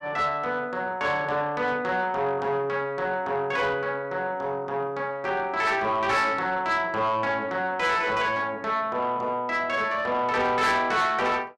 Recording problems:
distortion; soft clipping, signal-to-distortion ratio 12 dB

